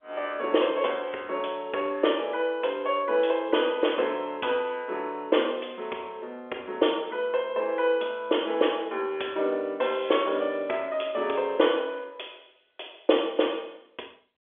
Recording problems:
phone line; 280 Hz to 3.5 kHz, G.711

